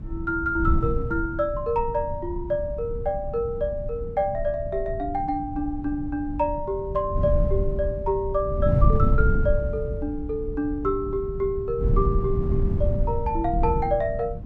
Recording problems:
wind on the microphone; below 120 Hz, SNR 2 dB

